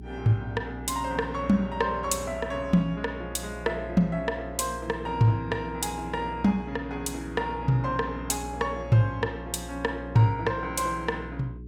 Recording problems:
hum; 60 Hz, harmonics up to 420 Hz, SNR 13 dB

